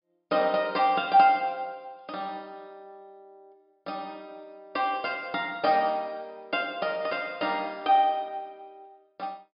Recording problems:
treble missing; nothing above 5.5 kHz

